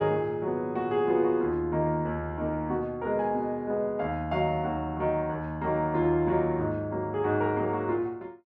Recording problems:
none

